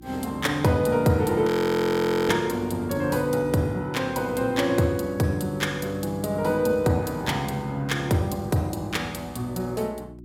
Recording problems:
hum; 60 Hz, harmonics up to 360 Hz, SNR 20 dB
audio freezing; at 1.5 s for 1 s

